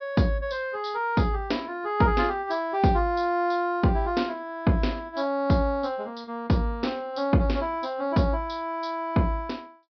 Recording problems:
treble missing; nothing above 5.5 kHz

